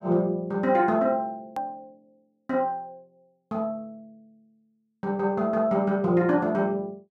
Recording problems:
hard cut with a click; at 1.5 s

